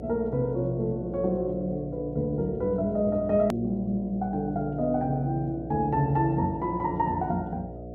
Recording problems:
hum; 60 Hz, harmonics up to 720 Hz, SNR 12 dB
click at an edit; at 3.5 s

